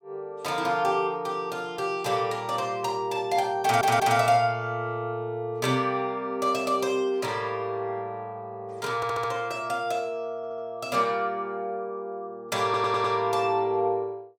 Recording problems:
stutter; 4 times, first at 3.5 s

